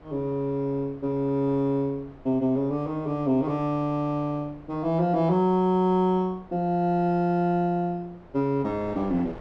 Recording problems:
wind noise; below 740 Hz, SNR 24 dB

